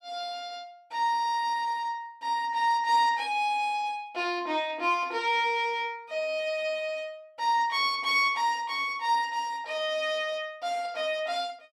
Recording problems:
none

